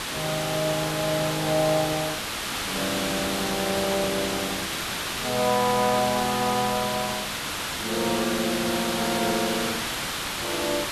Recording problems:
hiss; SNR 1 dB

